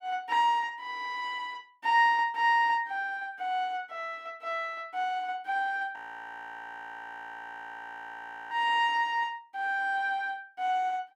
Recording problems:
frozen audio; at 6 s for 2.5 s

